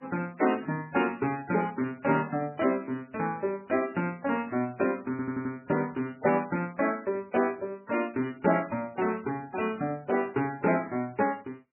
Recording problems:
lossy compression; MP3, log-spectral distance 3 dB, nothing above 2.4 kHz
audio stuttering; at 5 s

